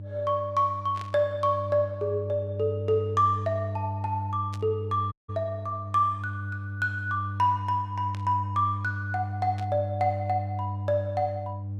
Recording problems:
electrical hum; 50 Hz, harmonics up to 300 Hz, SNR 6 dB
burst of static; 4 times, first at 1 s; peak -10 dB vs average level
dropout; at 5 s

